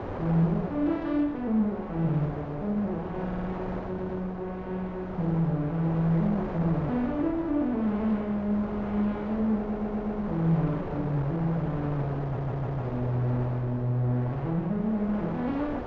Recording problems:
low-pass filter; nothing above 8 kHz
wind noise; below 790 Hz, SNR 9 dB
audio stuttering; 4 times, first at 3.5 s

